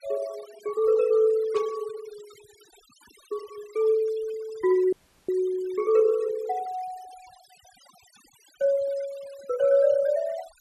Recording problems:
denoising artefacts; signal-to-artefact ratio 23 dB
burst of static; at 1.5 s; peak -14 dB vs average level
audio freezing; at 5 s

